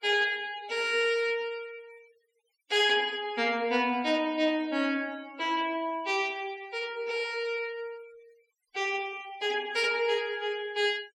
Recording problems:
noise reduction artefacts; signal-to-artefact ratio 23 dB

